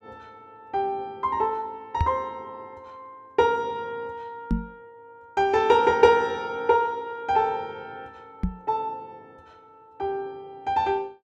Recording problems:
microphone bump; at 2 s, at 4.5 s and at 8.5 s; peak +3 dB vs average level

